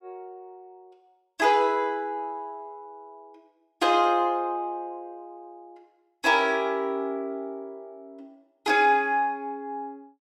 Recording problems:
none

